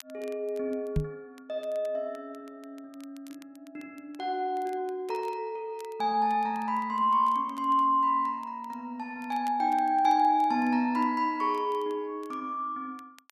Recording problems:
crackling; vinyl, SNR 30 dB
microphone bump; at 1 s; peak +4 dB vs average level

